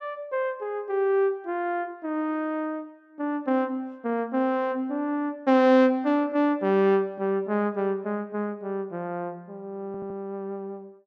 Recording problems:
audio stuttering; at 10 s

